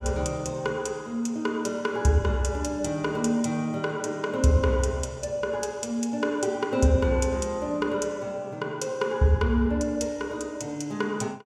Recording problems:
none

